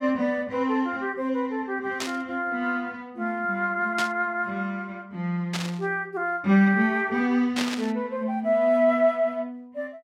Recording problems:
burst of static; 4 times, first at 2 s; peak 0 dB vs average level

